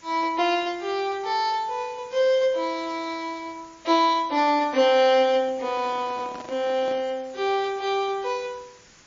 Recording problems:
codec artefacts; MP3, log-spectral distance 7 dB, nothing above 6 kHz
background hiss; slope -1 dB per octave, SNR 27 dB
handling noise; from 5.5 to 7 s; peak -12 dB vs average level

